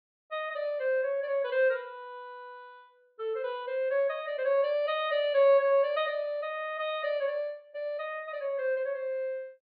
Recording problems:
treble missing; nothing above 4.6 kHz

